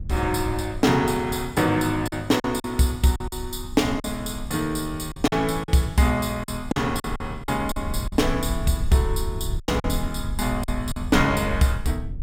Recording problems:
low-frequency rumble; below 84 Hz, SNR 10 dB
packet loss; 7% of the sound replaced, filled with silence

